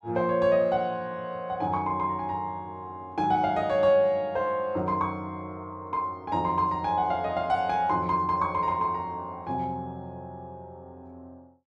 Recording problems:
none

